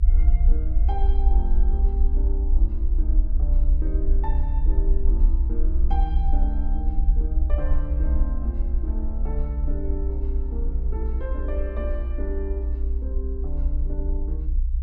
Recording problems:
rumble; below 60 Hz, SNR -11 dB
wind noise; below 280 Hz, SNR 18 dB

